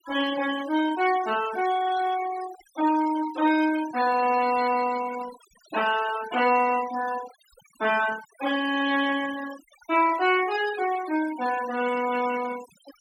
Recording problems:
denoising artefacts; signal-to-artefact ratio 15 dB

